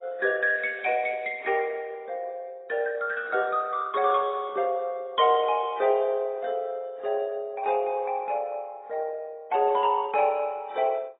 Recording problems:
lossy compression; MP2, then AAC, log-spectral distance 3 dB, nothing above 3.2 kHz

